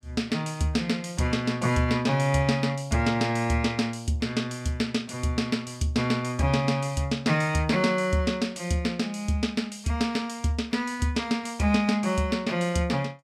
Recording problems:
none

